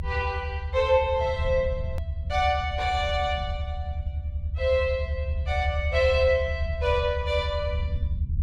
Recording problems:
low-frequency rumble; below 80 Hz, strongest tone 70 Hz, SNR 5 dB
hard cut with a click; at 2 s

